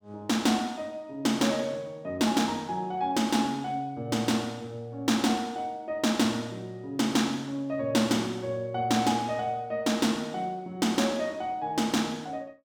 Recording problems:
none

